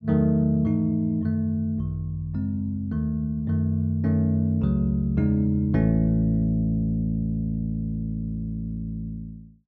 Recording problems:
none

